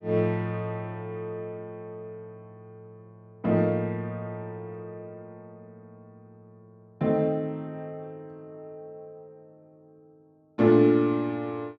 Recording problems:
none

